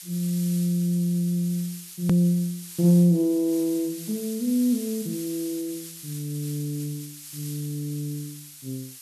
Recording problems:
background hiss; slope +6 dB per octave, SNR 14 dB
hard cut with a click; at 2 s

